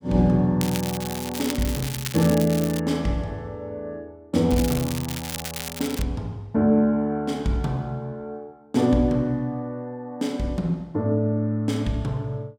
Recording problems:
crackle; from 0.5 to 3 s and from 4.5 to 6 s; loose cable, SNR 9 dB

